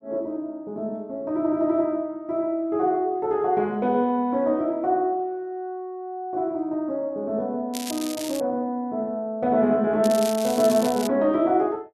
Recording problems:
crackle; at 7.5 s and from 10 to 11 s; loose cable, SNR 11 dB

